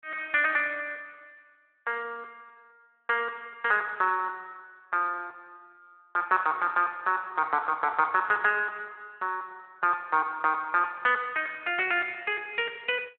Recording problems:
phone line; 340 Hz to 3.5 kHz, Speex

